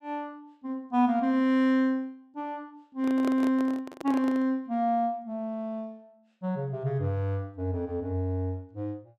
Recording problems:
handling noise; from 3 to 4.5 s; peak -2 dB vs average level

